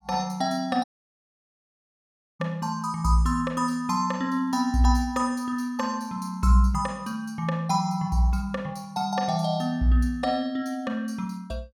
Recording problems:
dropout; at 1 s for 1.5 s

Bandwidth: 17 kHz